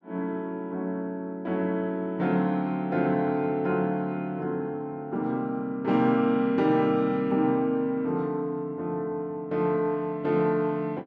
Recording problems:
none

